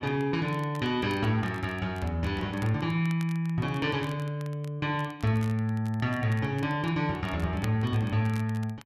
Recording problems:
crackle; vinyl, SNR 23 dB

